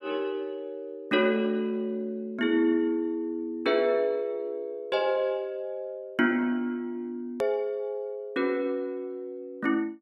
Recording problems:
edit click; at 7.5 s

